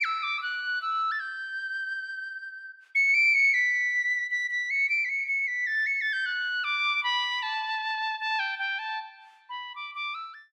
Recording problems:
none

